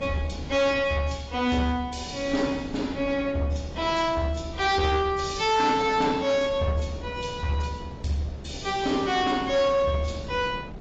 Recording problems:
lossy codec; AAC, log-spectral distance 4 dB, nothing above 7.3 kHz
distorted audio; hard clipping, uneven, signal-to-distortion ratio 11 dB
wind noise; below 400 Hz, SNR 16 dB

